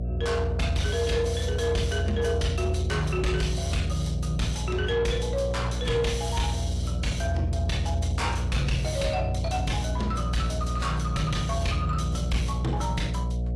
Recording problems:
lossy compression; AAC, log-spectral distance 2 dB, nothing above 11 kHz
distortion; soft clipping, signal-to-distortion ratio 10 dB
hum; 60 Hz, harmonics up to 720 Hz, SNR 2 dB

